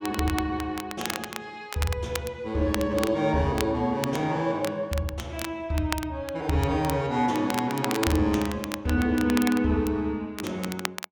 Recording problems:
crackle; vinyl, SNR 10 dB

